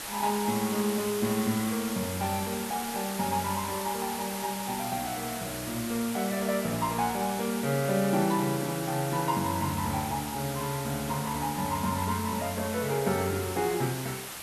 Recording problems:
hiss; slope -1 dB per octave, SNR 6 dB

